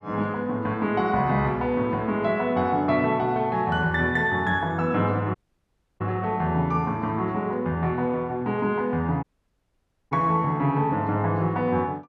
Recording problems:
audio cutting out; at 5.5 s for 0.5 s and at 9 s for 1 s

